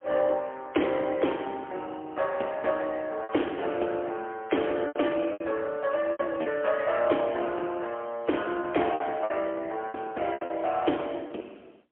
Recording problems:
telephone audio; 280 Hz to 3.2 kHz, AMR-NB, then MP3
packet loss; 7% of the sound replaced, filled with repeated pitch periods

